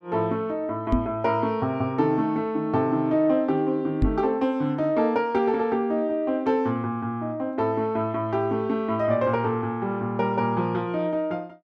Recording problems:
knock on the microphone; at 1 s and at 4 s; peak +5 dB vs average level

